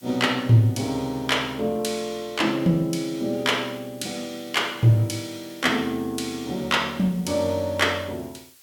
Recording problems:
hiss; slope +2 dB per octave, SNR 25 dB

